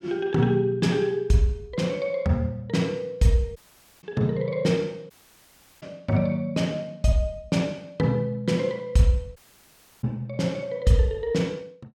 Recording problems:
audio cutting out; at 3.5 s, at 5 s for 0.5 s and at 9.5 s for 0.5 s

